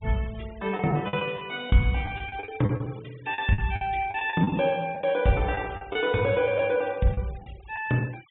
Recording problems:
low-pass filter; nothing above 3.7 kHz
noise reduction artefacts; signal-to-artefact ratio 23 dB
lost packets; 10% of the sound replaced, filled with the last packet

